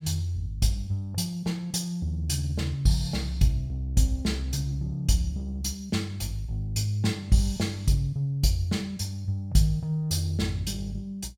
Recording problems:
none

